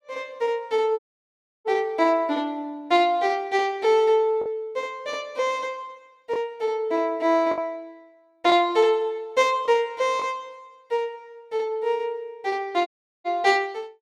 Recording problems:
lost packets; 1.5% of the sound replaced, filled with the last packet
audio cutting out; at 1 s for 0.5 s and at 13 s

